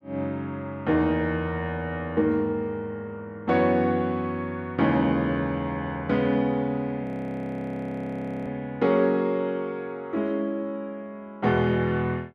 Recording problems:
audio freezing; at 7 s for 1.5 s

